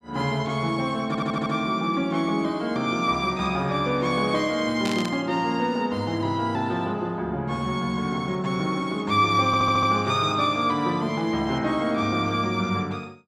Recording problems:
stutter; at 1 s and at 9.5 s
burst of static; at 5 s; peak -4 dB vs average level

